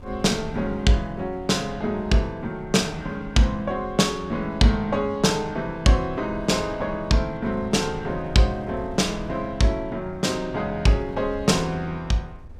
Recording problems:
wind noise; below 110 Hz, SNR 18 dB

